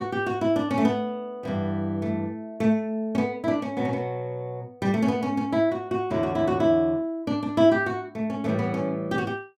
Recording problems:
none

